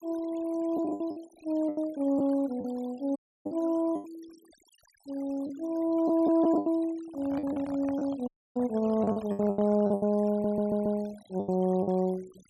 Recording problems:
denoising artefacts; signal-to-artefact ratio 24 dB
lost packets; 10% of the sound replaced, filled with the last packet
dropout; at 3 s and at 8.5 s
handling noise; from 7 to 10 s; peak -10 dB vs average level
audio stuttering; at 10 s

